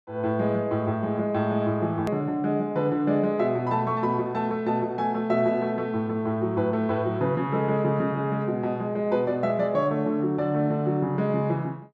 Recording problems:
hard cut with a click; at 2 s

